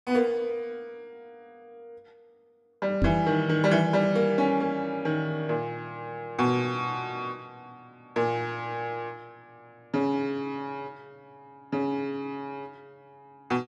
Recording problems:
microphone thump; at 3 s; peak +5 dB vs average level

